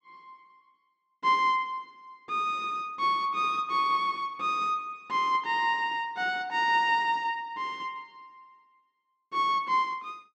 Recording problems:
none

